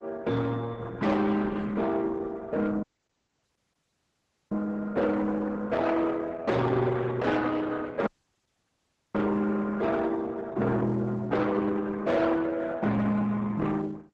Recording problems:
codec artefacts; Opus, then Opus, log-spectral distance 3 dB
distortion; soft clipping, signal-to-distortion ratio 10 dB
dropout; at 3 s for 1.5 s and at 8 s for 1 s

